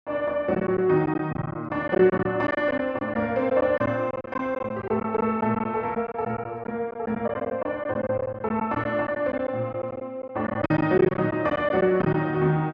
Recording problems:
packet loss; 10% of the sound replaced, filled with silence

